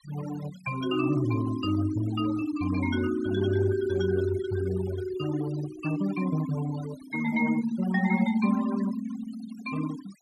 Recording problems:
noise reduction artefacts; signal-to-artefact ratio 16 dB

